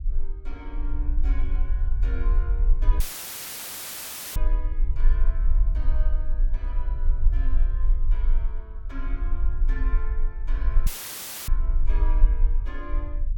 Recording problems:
rumble; below 42 Hz, strongest tone 22 Hz, SNR -16 dB
audio cutting out; at 3 s for 1.5 s and at 11 s for 0.5 s; filled with static

